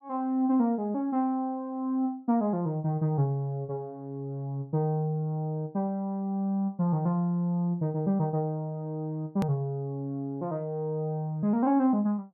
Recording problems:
edit click; at 9.5 s

